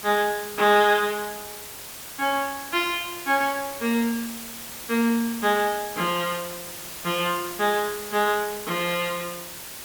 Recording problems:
background hiss; slope -1 dB per octave, SNR 11 dB

